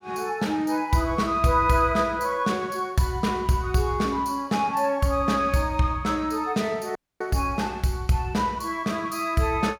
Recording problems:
audio cutting out; at 7 s

